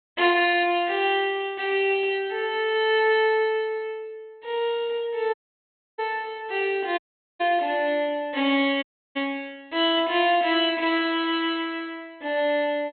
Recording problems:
treble cut off; nothing above 4 kHz
dropout; at 5.5 s for 0.5 s, at 7 s and at 9 s

